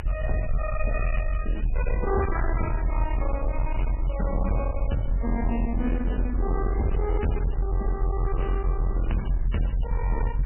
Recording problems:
codec artefacts; MP3, log-spectral distance 3 dB, nothing above 2.5 kHz
distortion; hard clipping, uneven, signal-to-distortion ratio 6 dB
hiss; SNR 23 dB
low-frequency rumble; below 54 Hz, SNR -2 dB

